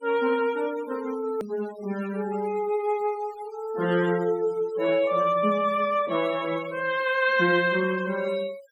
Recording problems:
noise reduction artefacts; signal-to-artefact ratio 19 dB
edit click; at 1.5 s

